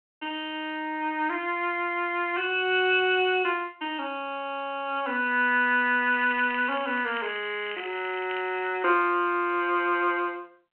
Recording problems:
phone line; 220 Hz to 3.2 kHz, G.726
crackling; from 6 to 8.5 s; loose cable, SNR 15 dB

